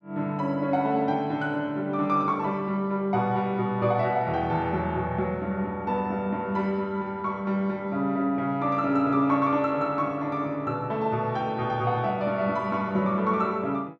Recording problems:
none

